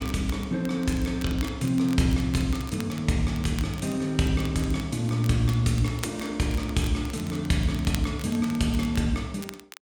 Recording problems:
crackle; vinyl, SNR 18 dB

